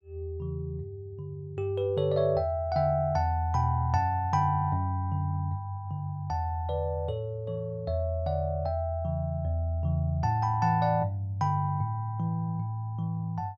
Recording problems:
none

